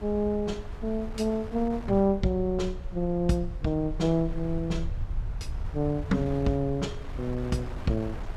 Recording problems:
low-frequency rumble; below 76 Hz, SNR 10 dB
wind noise; below 1.3 kHz, SNR 18 dB

